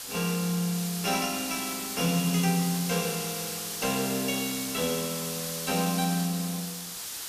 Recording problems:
background hiss; slope +2 dB per octave, SNR 4 dB

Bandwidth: 14.5 kHz